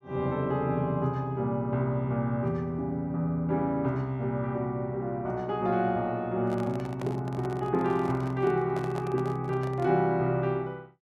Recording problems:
handling noise; from 6.5 to 10 s; peak -7 dB vs average level

